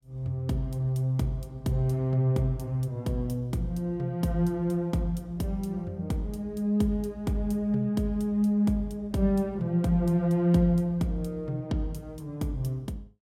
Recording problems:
none

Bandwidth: 16 kHz